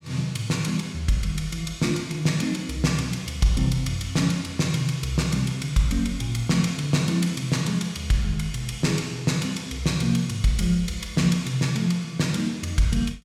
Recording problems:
none

